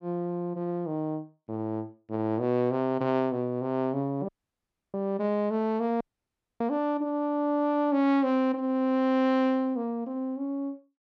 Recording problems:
dropout; at 4.5 s for 0.5 s and at 6 s for 0.5 s

